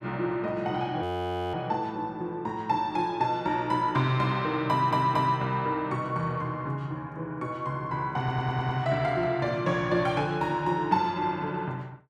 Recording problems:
frozen audio; at 1 s for 0.5 s
stutter; at 4.5 s and at 8 s

